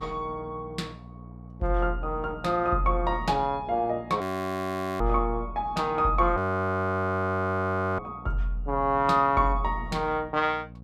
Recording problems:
electrical hum; 60 Hz, harmonics up to 540 Hz, SNR 19 dB
frozen audio; at 4 s for 1 s and at 6.5 s for 1.5 s

